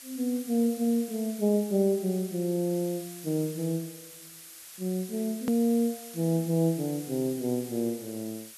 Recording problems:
background hiss; slope +2 dB per octave, SNR 14 dB
edit click; at 5.5 s

